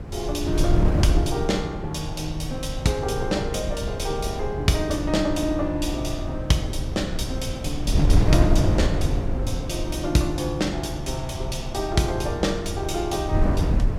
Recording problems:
wind on the microphone; below 140 Hz, SNR 1 dB

